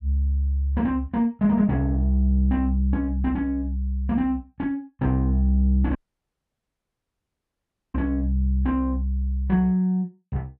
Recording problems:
audio cutting out; at 6 s for 2 s

